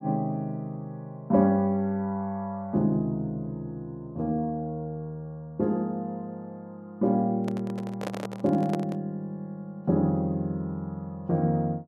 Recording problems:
handling noise; from 7.5 to 9 s; peak -1 dB vs average level

